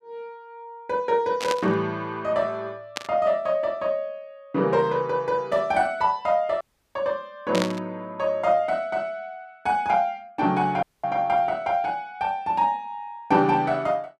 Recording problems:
burst of static; at 1.5 s, at 3 s and at 7.5 s; peak 0 dB vs average level
audio cutting out; at 6.5 s and at 11 s

